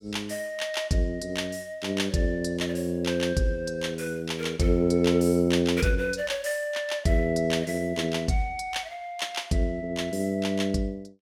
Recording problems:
none

